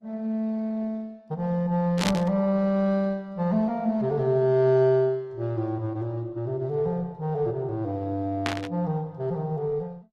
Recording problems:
codec artefacts; Opus, log-spectral distance 2 dB
static burst; at 2 s and at 8.5 s; peak +2 dB vs average level

